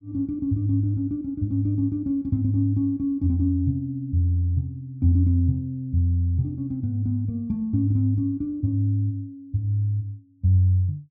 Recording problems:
none

